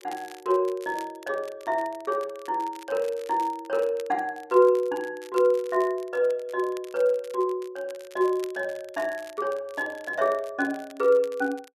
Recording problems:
crackling; vinyl, SNR 23 dB

